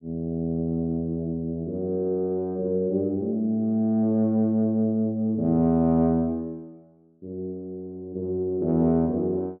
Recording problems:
none

